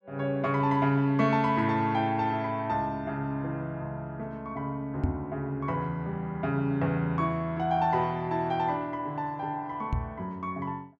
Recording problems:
microphone bump; at 5 s and at 10 s; peak +5 dB vs average level

